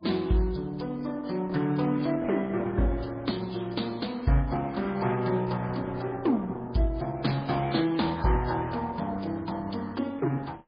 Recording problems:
lossy compression; Opus, then MP3, log-spectral distance 5 dB, nothing above 4.6 kHz

